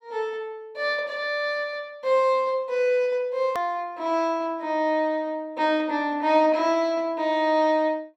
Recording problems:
hard cut with a click; at 3.5 s

